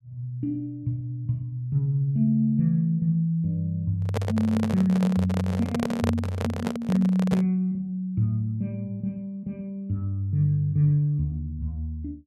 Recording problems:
handling noise; from 4 to 7.5 s; peak +1 dB vs average level

